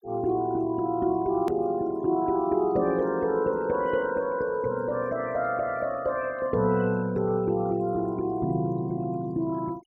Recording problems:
noise reduction artefacts; signal-to-artefact ratio 23 dB
click at an edit; at 1.5 s

